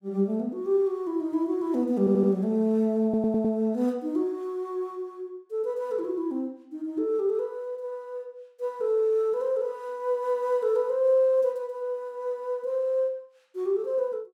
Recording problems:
audio stuttering; at 2 s and at 3 s

